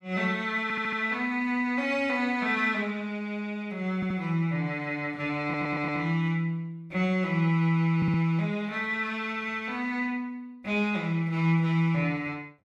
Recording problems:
audio stuttering; 4 times, first at 0.5 s

